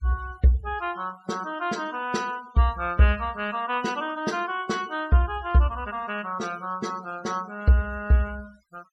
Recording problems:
noise reduction artefacts; signal-to-artefact ratio 21 dB

